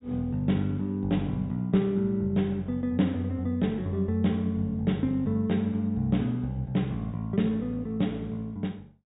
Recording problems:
treble cut off; nothing above 4 kHz

